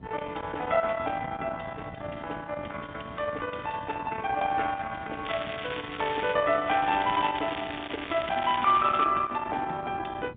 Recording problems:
phone line; 260 Hz to 3.6 kHz, G.711
distortion; soft clipping, signal-to-distortion ratio 20 dB
wind on the microphone; below 1.3 kHz, SNR 12 dB
crackling; from 5.5 to 6.5 s and from 6.5 to 9 s; loose cable, SNR 10 dB

